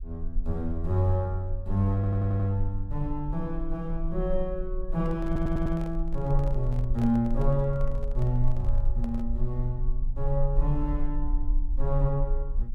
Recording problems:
rumble; below 40 Hz, strongest tone 18 Hz, SNR 4 dB
audio stuttering; at 2 s and at 5.5 s
handling noise; from 5 to 9.5 s; peak -9 dB vs average level

